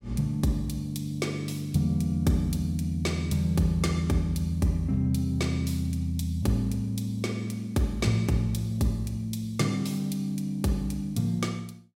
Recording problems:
none

